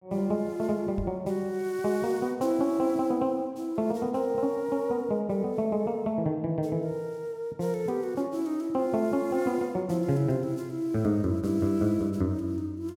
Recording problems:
knock on the microphone; at 1 s; peak -2 dB vs average level

